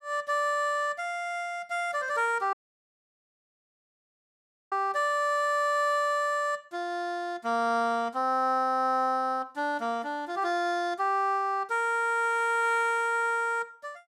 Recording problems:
dropout; at 2.5 s for 2 s

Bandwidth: 16 kHz